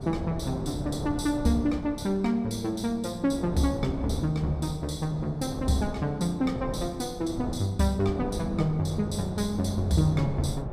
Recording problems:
wind noise; below 400 Hz, SNR 9 dB

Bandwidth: 15 kHz